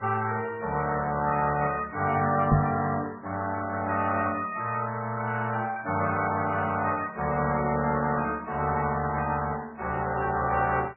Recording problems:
lossy codec; MP3, then Vorbis, log-spectral distance 3 dB, nothing above 2.5 kHz
knock on the microphone; at 2.5 s; peak +7 dB vs average level

